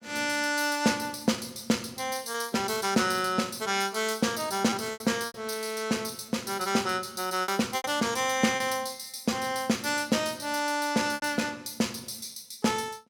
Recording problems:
lost packets; 4% of the sound replaced, filled with repeated pitch periods

